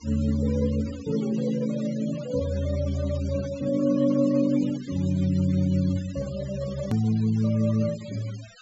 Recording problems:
treble missing; nothing above 8 kHz
noise reduction artefacts; signal-to-artefact ratio 20 dB
click at an edit; at 7 s

